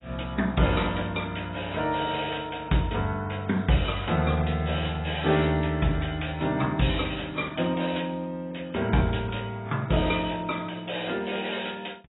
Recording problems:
lossy codec; AAC, log-spectral distance 8 dB, nothing above 3.6 kHz

